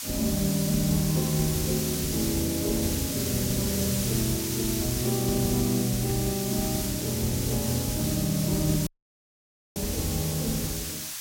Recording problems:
hiss; SNR 3 dB
dropout; at 9 s for 1 s

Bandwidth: 16.5 kHz